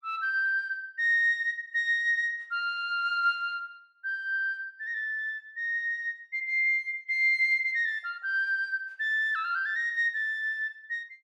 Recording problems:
none

